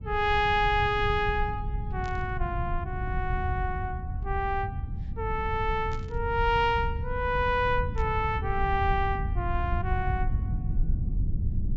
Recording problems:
treble cut off; nothing above 8 kHz
rumble; below 100 Hz, SNR 4 dB
burst of static; at 2 s, at 6 s and at 8 s; peak -14 dB vs average level

